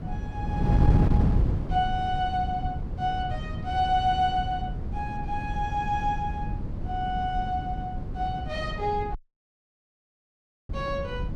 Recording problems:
wind on the microphone; below 170 Hz, SNR 1 dB
audio cutting out; at 9 s for 1.5 s

